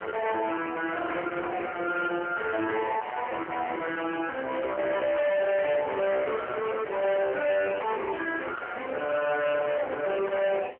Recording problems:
phone line; 280 Hz to 3.2 kHz, AMR-NB
distortion; hard clipping, signal-to-distortion ratio 6 dB

